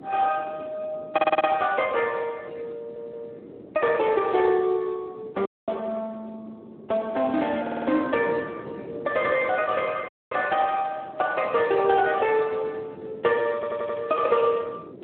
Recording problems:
telephone audio; 280 Hz to 3.5 kHz, Speex
wind on the microphone; below 450 Hz, SNR 18 dB
stutter; 4 times, first at 1 s
dropout; at 5.5 s and at 10 s

